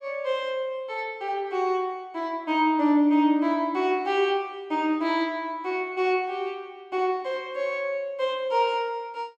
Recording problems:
none

